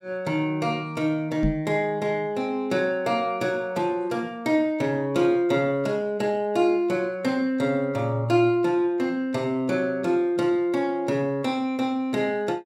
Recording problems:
microphone bump; at 1.5 s; peak +2 dB vs average level

